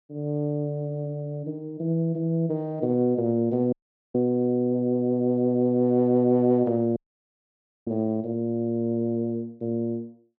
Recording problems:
dropout; at 3.5 s and at 7 s for 1 s

